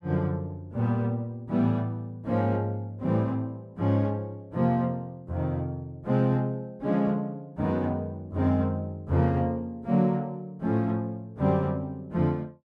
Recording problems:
none

